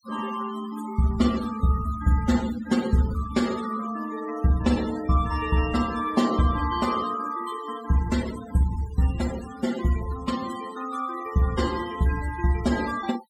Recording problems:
noise reduction artefacts; signal-to-artefact ratio 14 dB

